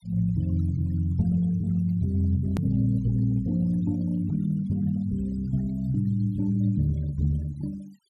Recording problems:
denoising artefacts; signal-to-artefact ratio 26 dB
edit click; at 2.5 s

